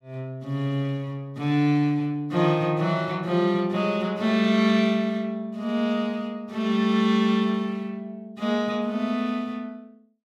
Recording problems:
none

